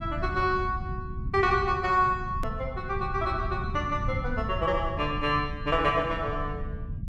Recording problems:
low-frequency rumble; below 120 Hz, SNR 8 dB
edit click; at 2.5 s

